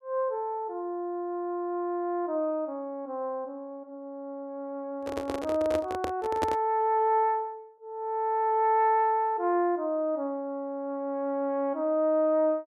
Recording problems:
handling noise; from 5 to 6.5 s; peak +2 dB vs average level

